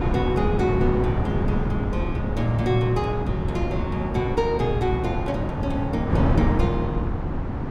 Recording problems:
wind on the microphone; below 270 Hz, SNR -1 dB

